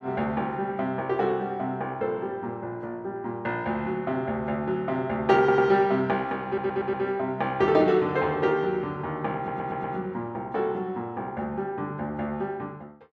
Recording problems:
audio stuttering; at 5.5 s, at 6.5 s and at 9.5 s

